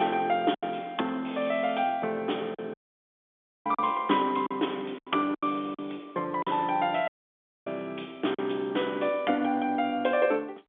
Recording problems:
phone line; 260 Hz to 3.6 kHz, G.711
lost packets; 6% of the sound replaced, filled with silence
audio cutting out; at 2.5 s for 1 s and at 7 s for 0.5 s

